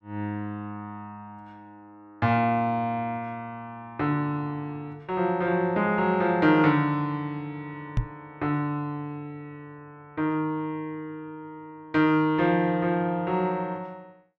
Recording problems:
microphone bump; at 8 s; peak +4 dB vs average level

